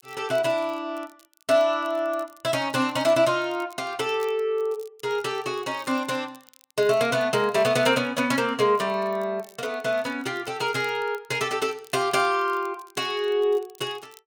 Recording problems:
crackling; vinyl, SNR 28 dB

